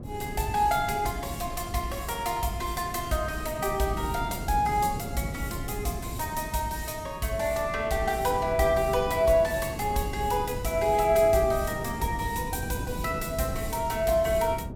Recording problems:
wind on the microphone; below 250 Hz, SNR 10 dB

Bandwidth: 17 kHz